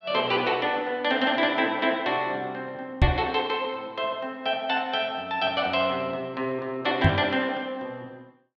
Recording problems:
knock on the microphone; at 3 s and at 7 s; peak +9 dB vs average level

